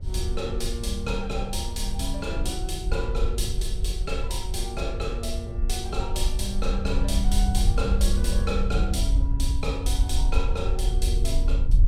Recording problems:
wind noise; below 62 Hz, SNR -3 dB

